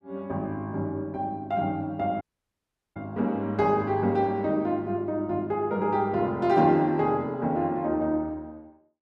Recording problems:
dropout; at 2 s for 0.5 s

